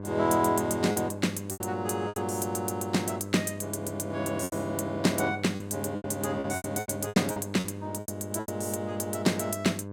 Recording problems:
hum; 50 Hz, harmonics up to 1.2 kHz, SNR 9 dB
lost packets; 9% of the sound replaced, filled with repeated pitch periods

